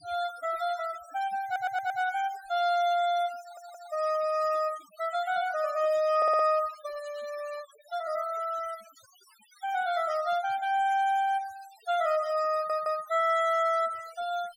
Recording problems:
denoising artefacts; signal-to-artefact ratio 21 dB
audio stuttering; 4 times, first at 1.5 s

